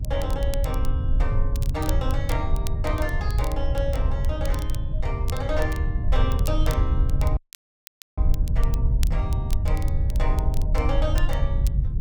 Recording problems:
electrical hum; 50 Hz, harmonics up to 300 Hz, SNR 18 dB
low-frequency rumble; below 78 Hz, SNR -7 dB
crackle; vinyl, SNR 11 dB
dropout; at 7.5 s for 1 s

